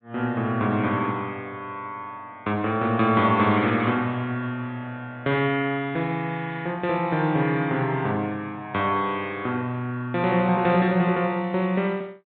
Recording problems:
treble missing; nothing above 4 kHz

